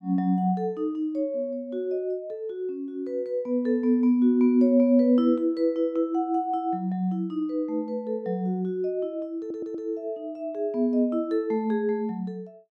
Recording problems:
stutter; at 9.5 s

